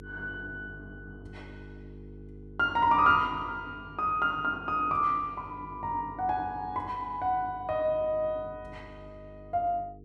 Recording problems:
hum; 50 Hz, harmonics up to 450 Hz, SNR 19 dB

